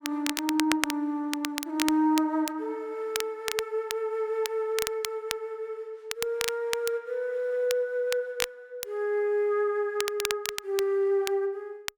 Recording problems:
crackling; vinyl, SNR 6 dB

